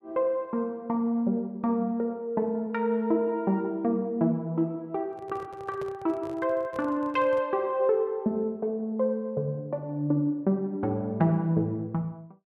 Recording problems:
handling noise; from 5 to 7.5 s; peak -9 dB vs average level

